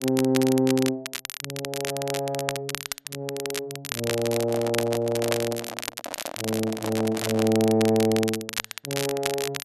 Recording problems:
crackling; vinyl, SNR 7 dB
microphone handling noise; from 4 to 7.5 s; peak -2 dB vs average level

